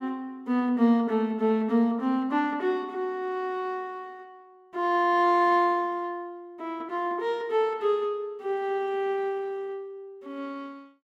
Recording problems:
none

